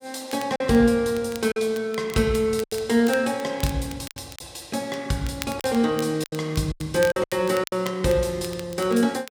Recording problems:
crackle; vinyl, SNR 18 dB
packet loss; 7% of the sound replaced, filled with silence

